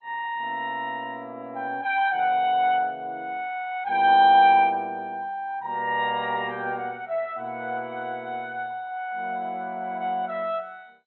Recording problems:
lossy compression; MP2, log-spectral distance 2 dB

